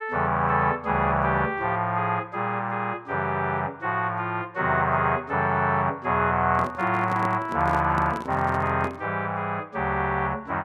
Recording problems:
microphone handling noise; from 6.5 to 9 s; peak -6 dB vs average level

